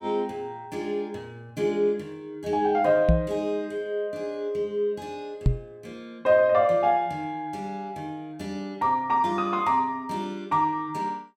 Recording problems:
microphone thump; at 3 s and at 5.5 s; peak +8 dB vs average level

